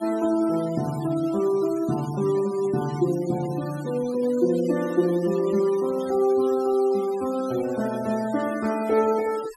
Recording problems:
noise reduction artefacts; signal-to-artefact ratio 19 dB

